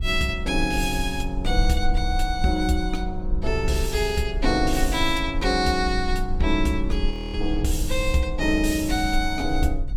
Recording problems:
rumble; below 52 Hz, SNR 5 dB
frozen audio; at 7 s

